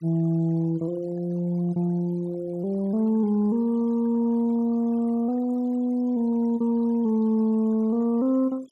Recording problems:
denoising artefacts; signal-to-artefact ratio 27 dB

